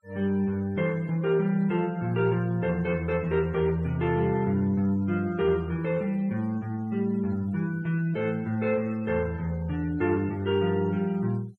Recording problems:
noise reduction artefacts; signal-to-artefact ratio 27 dB

